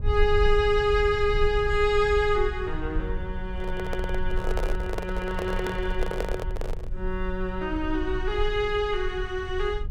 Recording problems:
low-frequency rumble; below 50 Hz, strongest tone 18 Hz, SNR 7 dB
handling noise; from 3.5 to 7 s; peak +1 dB vs average level

